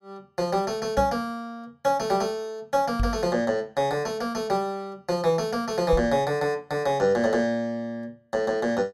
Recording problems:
knock on the microphone; at 1 s, at 3 s and at 6 s; peak +2 dB vs average level

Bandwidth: 17 kHz